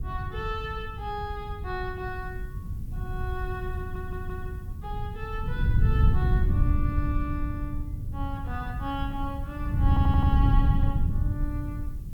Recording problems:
hiss; slope +1 dB per octave, SNR 24 dB
wind noise; below 110 Hz, SNR -7 dB
audio stuttering; at 4 s and at 10 s

